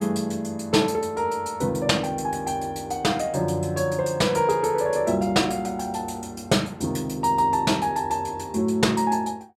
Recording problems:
none

